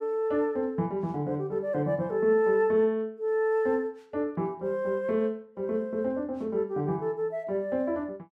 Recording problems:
none

